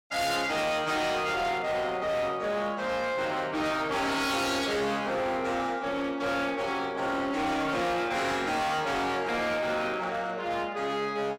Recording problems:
distortion; hard clipping, uneven, signal-to-distortion ratio 7 dB

